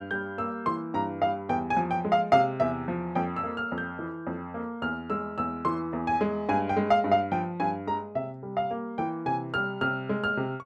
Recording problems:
none

